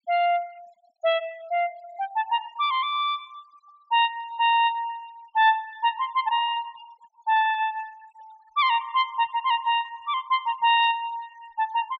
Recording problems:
treble missing; nothing above 8 kHz
noise reduction artefacts; signal-to-artefact ratio 26 dB

